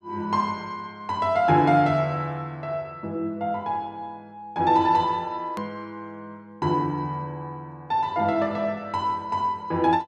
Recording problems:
edit click; at 5.5 s

